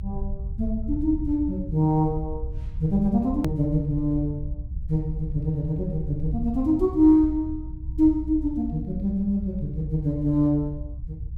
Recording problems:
low-frequency rumble; below 76 Hz, SNR 10 dB
edit click; at 3.5 s

